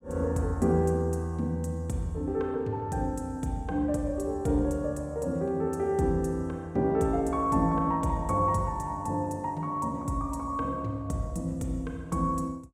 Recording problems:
none

